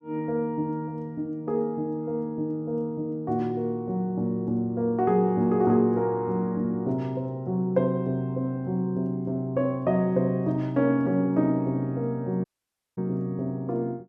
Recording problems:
dropout; at 12 s for 0.5 s

